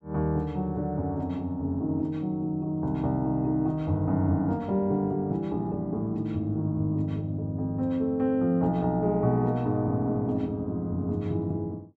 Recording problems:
none

